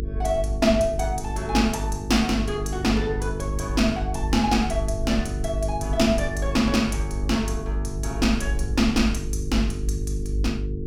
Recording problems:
hum; 50 Hz, harmonics up to 450 Hz, SNR 7 dB
rumble; below 56 Hz, strongest tone 54 Hz, SNR 7 dB

